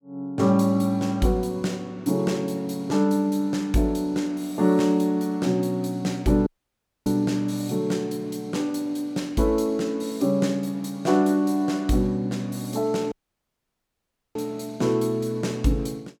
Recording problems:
dropout; at 6.5 s for 0.5 s and at 13 s for 1 s

